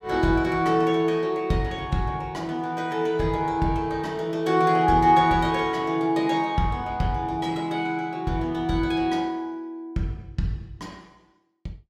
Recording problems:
none

